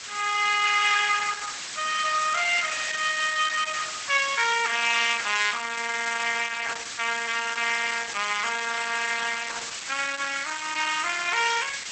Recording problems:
lossy compression; Opus, log-spectral distance 19 dB, nothing above 7.8 kHz
background hiss; SNR 8 dB

